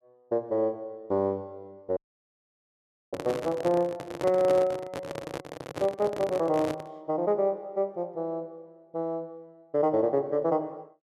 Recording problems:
audio cutting out; at 2 s for 1 s
handling noise; from 3 to 7 s; peak 0 dB vs average level

